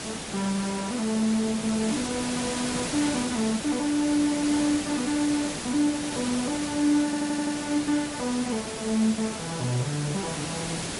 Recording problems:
codec artefacts; MP3, log-spectral distance 10 dB, nothing above 13.1 kHz
background hiss; slope -3 dB per octave, SNR 5 dB
audio stuttering; at 7 s

